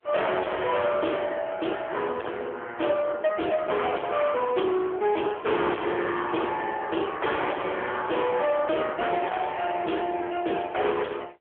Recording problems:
phone line; 280 Hz to 3.5 kHz, AMR-NB
distortion; hard clipping, signal-to-distortion ratio 5 dB

